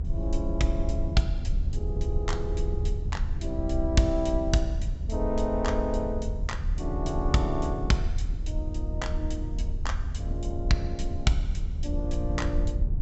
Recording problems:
treble missing; nothing above 7.8 kHz
rumble; below 74 Hz, SNR 1 dB

